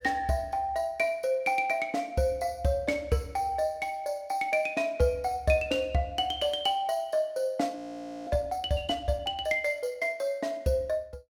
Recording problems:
audio freezing; at 8 s for 0.5 s

